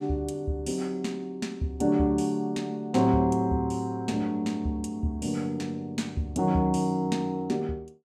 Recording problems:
none

